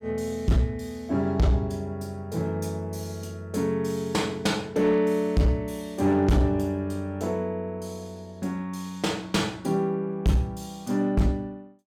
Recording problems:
distortion; hard clipping, signal-to-distortion ratio 8 dB

